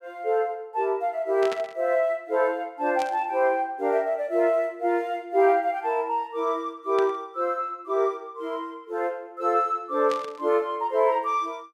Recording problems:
static burst; 4 times, first at 1.5 s; peak -6 dB vs average level

